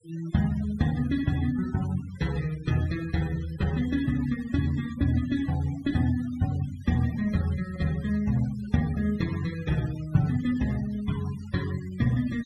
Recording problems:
noise reduction artefacts; signal-to-artefact ratio 19 dB

